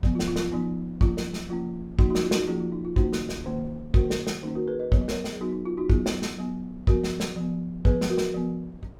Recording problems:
wind noise; below 210 Hz, SNR 20 dB

